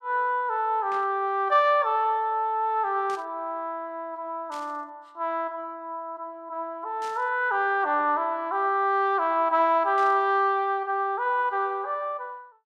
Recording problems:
burst of static; 5 times, first at 1 s; peak -14 dB vs average level

